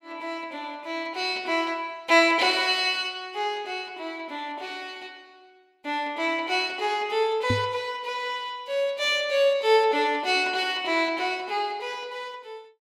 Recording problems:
microphone bump; at 7.5 s; peak +2 dB vs average level

